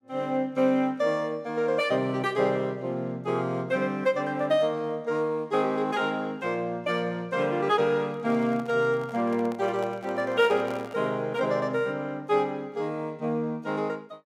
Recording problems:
handling noise; from 8 to 11 s; peak -8 dB vs average level

